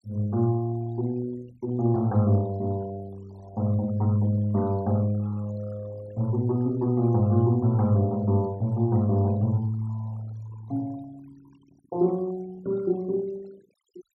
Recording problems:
denoising artefacts; signal-to-artefact ratio 25 dB

